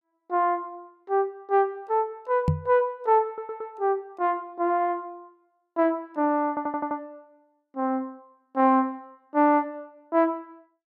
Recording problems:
knock on the microphone; at 2.5 s; peak +6 dB vs average level
audio stuttering; at 3.5 s and at 6.5 s

